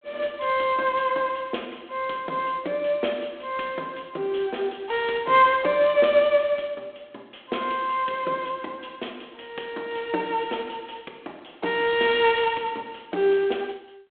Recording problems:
telephone audio; 240 Hz to 3.5 kHz, G.726

